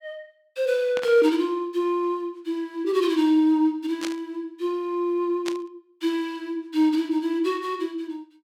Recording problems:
static burst; at 1 s, at 4 s and at 5.5 s; peak -4 dB vs average level

